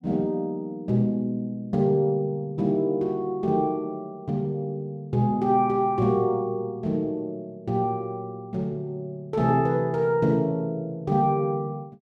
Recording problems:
none

